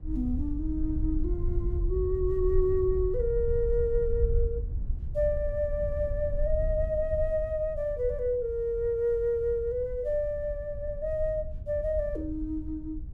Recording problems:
wind noise; below 70 Hz, SNR 5 dB

